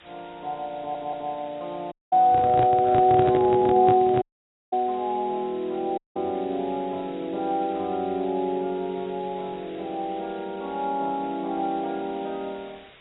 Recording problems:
codec artefacts; AAC, log-spectral distance 5 dB
hiss; SNR 25 dB
stutter; at 1 s
audio cutting out; at 2 s, at 4 s for 0.5 s and at 6 s
handling noise; from 2.5 to 4 s; peak +1 dB vs average level

